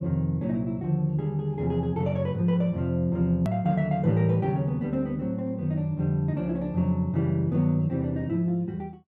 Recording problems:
click at an edit; at 3.5 s

